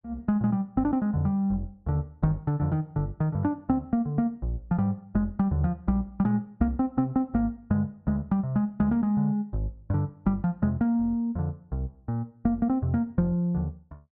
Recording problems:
none

